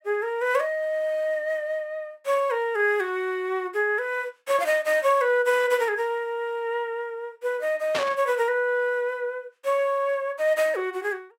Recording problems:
burst of static; at 8 s; peak +1 dB vs average level

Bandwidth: 16 kHz